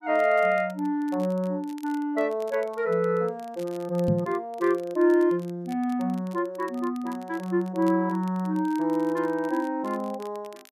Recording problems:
crackle; vinyl, SNR 27 dB
knock on the microphone; at 4 s; peak +4 dB vs average level

